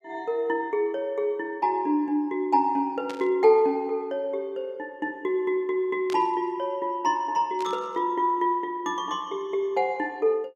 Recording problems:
static burst; at 3 s, at 6 s and at 7.5 s; peak -10 dB vs average level

